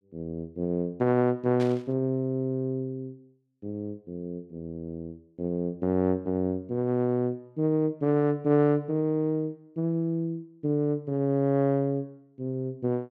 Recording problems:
static burst; at 1.5 s; peak -9 dB vs average level

